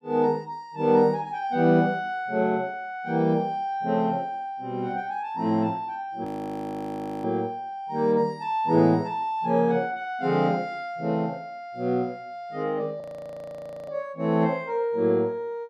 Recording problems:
frozen audio; at 6.5 s for 1 s and at 13 s for 1 s

